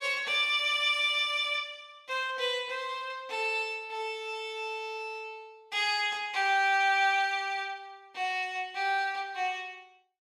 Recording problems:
none

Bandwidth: 15.5 kHz